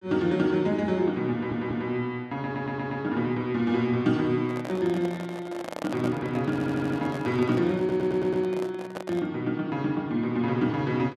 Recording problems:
stutter; 4 times, first at 1.5 s
handling noise; from 4.5 to 9.5 s; peak -4 dB vs average level

